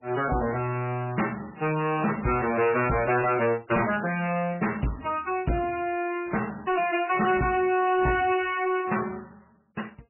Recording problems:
lossy codec; MP3, log-spectral distance 5 dB, nothing above 2.4 kHz
distortion; soft clipping, signal-to-distortion ratio 10 dB

